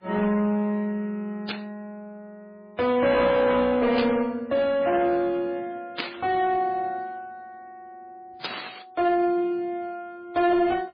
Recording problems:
lossy codec; MP3, then MP3, log-spectral distance 2 dB, nothing above 4.4 kHz
distorted audio; soft clipping, signal-to-distortion ratio 10 dB
burst of static; 4 times, first at 1.5 s; peak -1 dB vs average level

